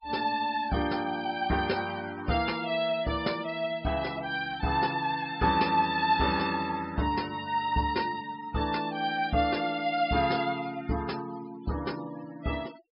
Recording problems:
low-pass filter; nothing above 5.5 kHz
denoising artefacts; signal-to-artefact ratio 18 dB

